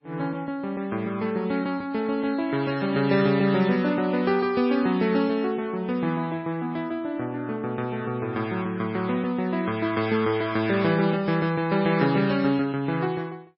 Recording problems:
lossy codec; MP3, log-spectral distance 2 dB, nothing above 4.9 kHz

